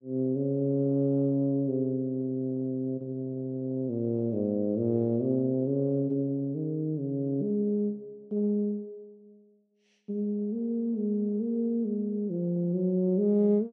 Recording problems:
none

